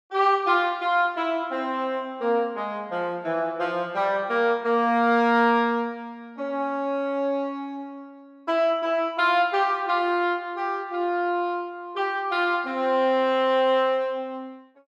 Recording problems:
none

